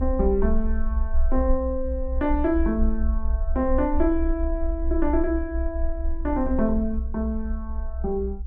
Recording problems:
low-frequency rumble; below 60 Hz, strongest tone 20 Hz, SNR 2 dB

